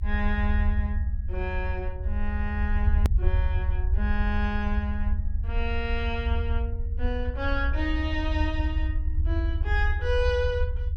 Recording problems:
low-frequency rumble; below 78 Hz, SNR -4 dB
hard cut with a click; at 3 s

